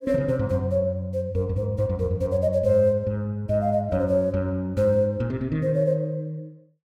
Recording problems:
none

